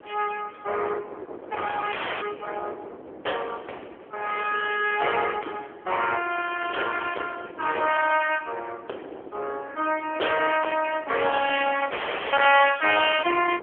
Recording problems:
phone line; 320 Hz to 3.3 kHz, AMR-NB
distorted audio; hard clipping, signal-to-distortion ratio 14 dB
wind noise; below 1.4 kHz, SNR 15 dB
audio cutting out; at 2 s and at 12 s

